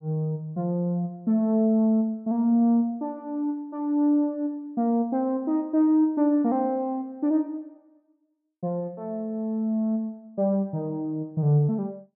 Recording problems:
none

